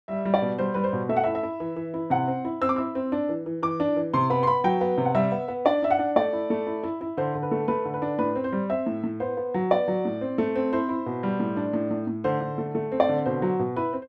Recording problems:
none

